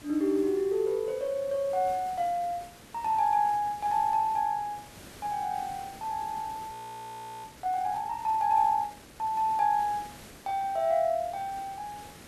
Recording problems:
background hiss; slope -4 dB per octave, SNR 19 dB
audio freezing; at 6.5 s for 0.5 s

